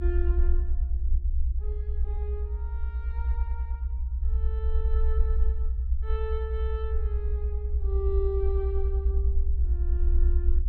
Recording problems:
rumble; below 64 Hz, SNR -10 dB

